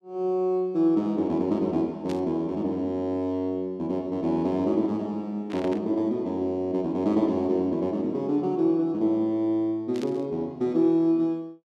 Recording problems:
burst of static; at 2 s, at 5.5 s and at 10 s; peak -12 dB vs average level

